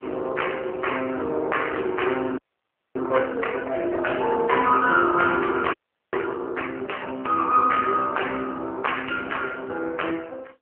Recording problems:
phone line; 280 Hz to 3 kHz, AMR-NB
frozen audio; at 2.5 s for 0.5 s and at 5.5 s

